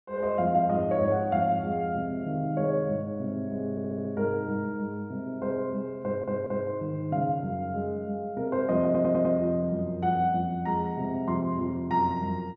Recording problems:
stutter; at 3.5 s, at 6 s and at 9 s

